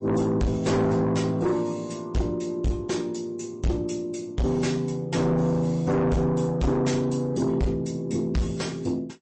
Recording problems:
codec artefacts; MP3, log-spectral distance 2 dB, nothing above 8.2 kHz
distorted audio; soft clipping, signal-to-distortion ratio 7 dB

